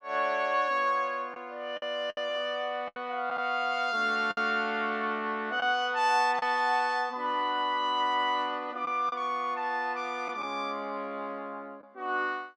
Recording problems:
lost packets; 4% of the sound replaced, filled with the last packet

